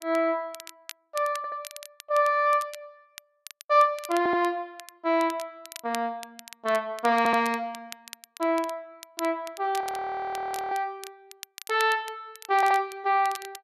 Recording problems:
crackle; vinyl, SNR 18 dB
audio stuttering; 4 times, first at 1.5 s
audio freezing; at 10 s for 1 s

